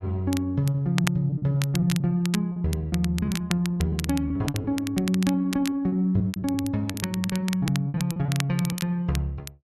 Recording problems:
crackle; vinyl, SNR 11 dB
packet loss; 16% of the sound replaced, filled with repeated pitch periods

